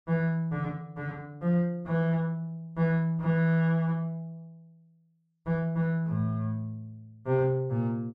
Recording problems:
none

